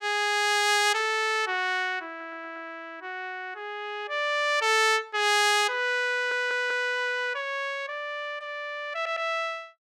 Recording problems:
audio stuttering; at 2 s, at 6 s and at 9 s

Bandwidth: 16.5 kHz